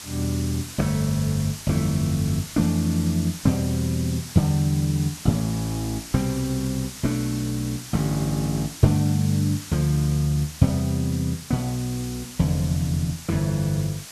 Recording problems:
background hiss; slope +1 dB per octave, SNR 13 dB

